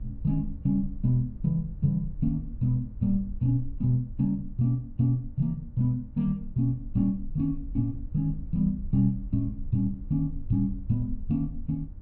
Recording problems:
hum; 50 Hz, harmonics up to 900 Hz, SNR 28 dB
rumble; below 58 Hz, SNR 13 dB

